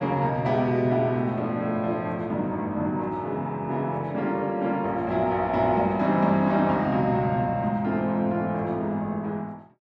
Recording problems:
none

